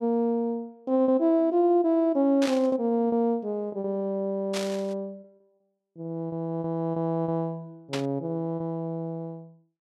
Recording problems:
packet loss; 5% of the sound replaced, filled with repeated pitch periods
burst of static; at 2.5 s, at 4.5 s and at 8 s; peak -2 dB vs average level

